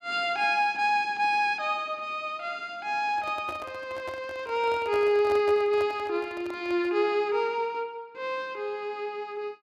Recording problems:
handling noise; from 3 to 7 s; peak -7 dB vs average level

